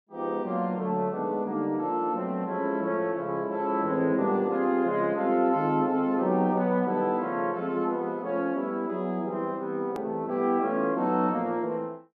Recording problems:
edit click; at 10 s

